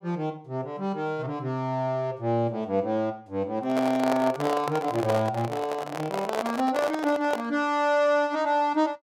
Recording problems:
microphone handling noise; from 3.5 to 7.5 s; peak +1 dB vs average level

